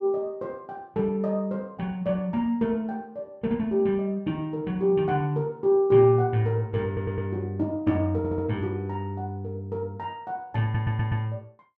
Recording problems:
stutter; at 7 s, at 8 s and at 11 s

